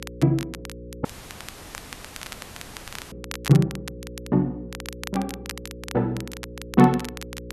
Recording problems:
hum; 60 Hz, harmonics up to 540 Hz, SNR 16 dB
crackle; vinyl, SNR 16 dB
dropout; at 1 s for 2 s

